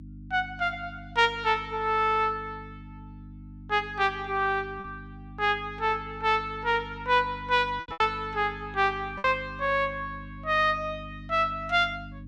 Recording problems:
electrical hum; 50 Hz, harmonics up to 300 Hz, SNR 17 dB
lost packets; 3% of the sound replaced, filled with repeated pitch periods

